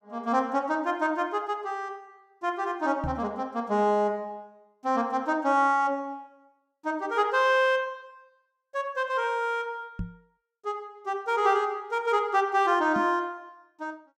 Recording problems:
microphone bump; at 3 s, at 10 s and at 13 s; peak -3 dB vs average level

